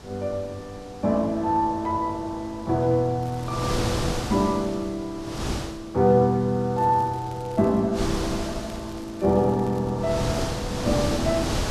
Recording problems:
wind noise; below 1.3 kHz, SNR 5 dB
crackling; from 3 to 4.5 s, from 7 to 8 s and from 8 to 10 s; loose cable, SNR 28 dB

